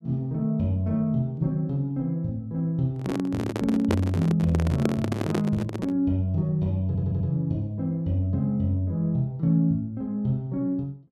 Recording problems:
handling noise; from 3 to 6 s; peak +4 dB vs average level
stutter; at 7 s

